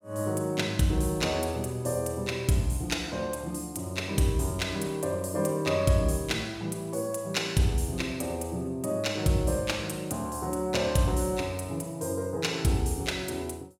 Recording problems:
none

